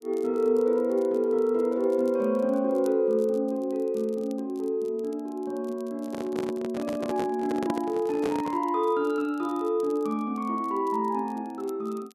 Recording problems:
crackle; vinyl, SNR 30 dB
microphone handling noise; from 6 to 8.5 s; peak -2 dB vs average level

